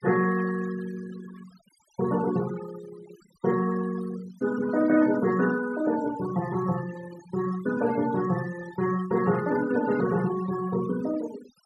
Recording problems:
denoising artefacts; signal-to-artefact ratio 16 dB

